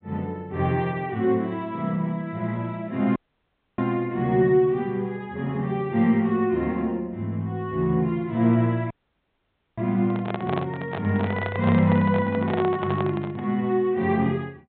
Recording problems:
treble cut off; nothing above 4 kHz
audio cutting out; at 3 s for 0.5 s and at 9 s for 1 s
microphone handling noise; from 10 to 13 s; peak -1 dB vs average level

